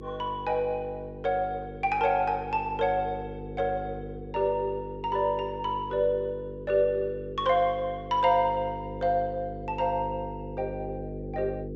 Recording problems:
treble cut off; nothing above 8 kHz
mains hum; 50 Hz, harmonics up to 500 Hz, SNR 11 dB

